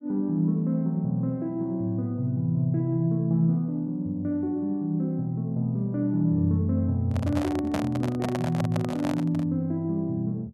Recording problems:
microphone handling noise; from 7 to 9.5 s; peak 0 dB vs average level

